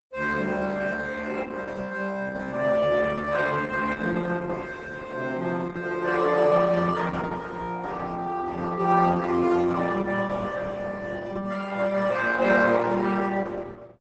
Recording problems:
lossy codec; Opus, log-spectral distance 4 dB, nothing above 8 kHz

